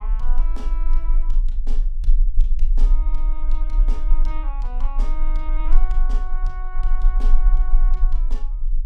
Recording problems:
rumble; below 32 Hz, strongest tone 22 Hz, SNR -16 dB

